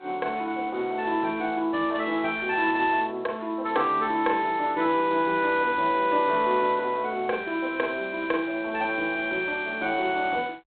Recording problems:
telephone audio; 280 Hz to 3.9 kHz, G.726

